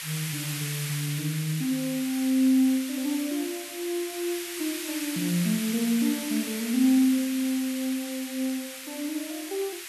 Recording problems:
hiss; SNR 7 dB
crackle; at 1 s and from 5.5 to 8.5 s; loose cable, SNR 29 dB

